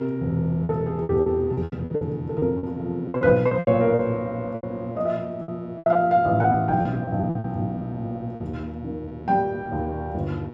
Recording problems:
hum; 60 Hz, harmonics up to 2.3 kHz, SNR 17 dB
packet loss; 14% of the sound replaced, filled with repeated pitch periods

